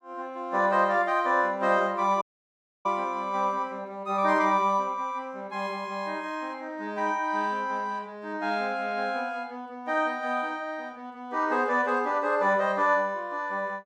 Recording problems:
audio cutting out; at 2 s for 0.5 s

